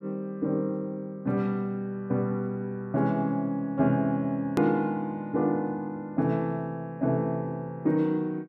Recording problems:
hard cut with a click; at 4.5 s

